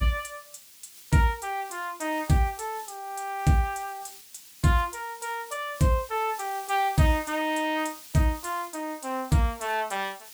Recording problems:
background hiss; SNR 18 dB

